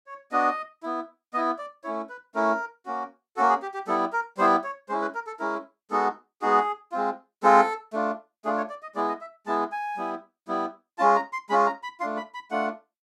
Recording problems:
none

